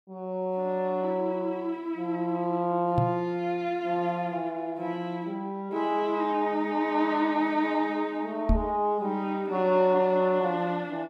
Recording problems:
microphone bump; at 3 s and at 8.5 s; peak +6 dB vs average level

